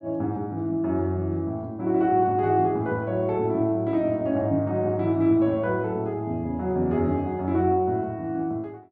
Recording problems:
none

